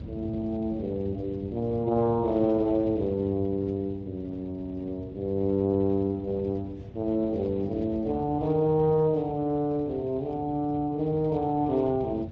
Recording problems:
lossy compression; Speex, log-spectral distance 2 dB
low-frequency rumble; below 190 Hz, SNR 13 dB

